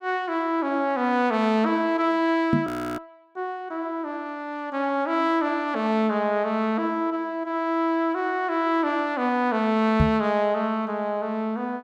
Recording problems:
knock on the microphone; at 2.5 s and at 10 s; peak +6 dB vs average level
frozen audio; at 2.5 s

